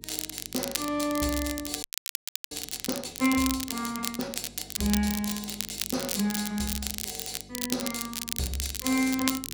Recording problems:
hum; 50 Hz, harmonics up to 450 Hz, SNR 21 dB
crackle; vinyl, SNR 3 dB
audio freezing; at 2 s for 0.5 s

